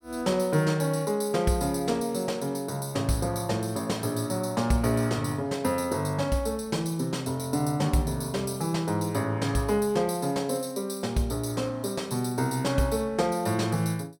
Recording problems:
none

